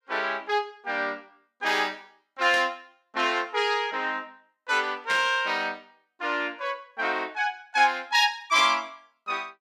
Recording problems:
static burst; at 2.5 s, at 5 s and at 8.5 s; peak -3 dB vs average level

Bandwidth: 15.5 kHz